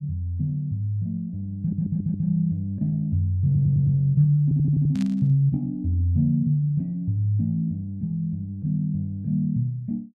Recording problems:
audio stuttering; at 1.5 s, at 3.5 s and at 4.5 s
static burst; at 5 s; peak -13 dB vs average level

